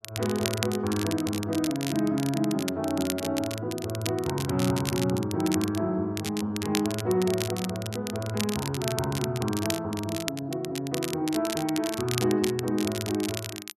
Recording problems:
crackle; vinyl, SNR 7 dB

